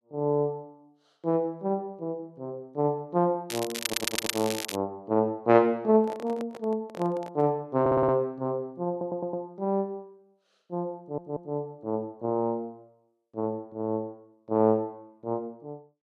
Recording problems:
crackling; from 3.5 to 5 s; loose cable, SNR 3 dB
stutter; 4 times, first at 4 s
handling noise; from 6 to 7.5 s; peak -8 dB vs average level

